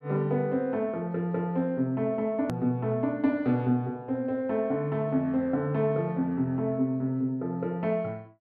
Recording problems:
click at an edit; at 2.5 s

